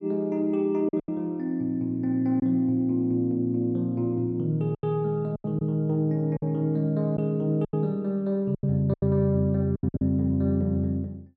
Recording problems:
packet loss; 7% of the sound replaced, filled with silence

